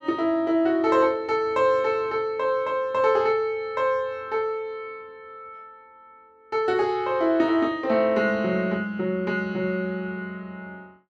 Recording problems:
none

